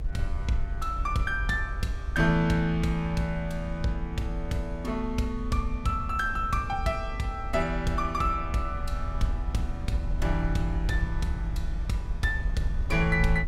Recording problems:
rumble; below 66 Hz, SNR 5 dB
wind on the microphone; below 240 Hz, SNR 18 dB

